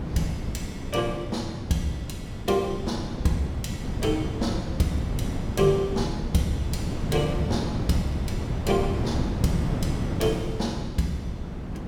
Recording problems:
wind noise; below 250 Hz, SNR 2 dB

